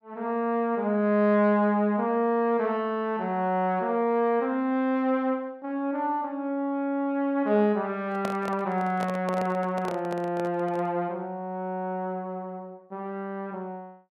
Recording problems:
handling noise; from 8 to 11 s; peak -2 dB vs average level

